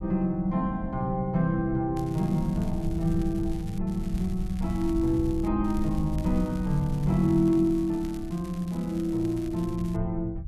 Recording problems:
low-frequency rumble; below 82 Hz, SNR 10 dB
crackle; from 2 to 4 s, from 4 to 5.5 s and from 5.5 to 10 s; loose cable, SNR 24 dB

